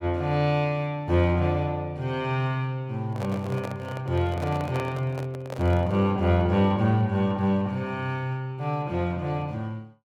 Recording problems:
microphone handling noise; from 3 to 6 s; peak -5 dB vs average level

